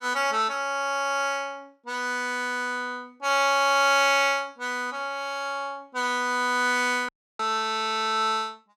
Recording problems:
audio cutting out; at 7 s

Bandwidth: 16 kHz